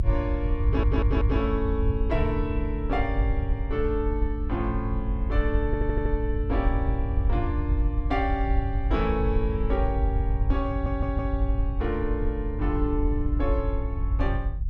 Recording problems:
low-frequency rumble; below 78 Hz, SNR -2 dB
stutter; at 0.5 s, at 5.5 s and at 11 s

